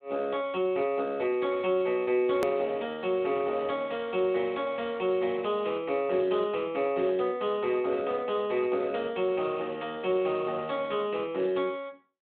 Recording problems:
phone line; 220 Hz to 3.5 kHz, Speex
hard cut with a click; at 2.5 s

